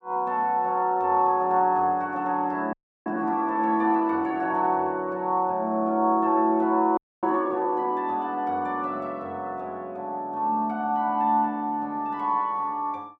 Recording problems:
audio freezing; at 2.5 s and at 7 s

